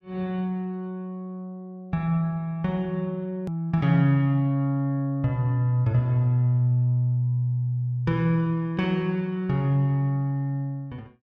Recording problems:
click at an edit; at 3.5 s

